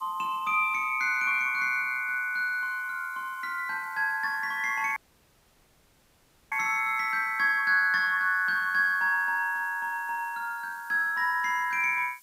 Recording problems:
hiss; slope +2 dB per octave, SNR 27 dB
audio cutting out; at 5 s for 1.5 s

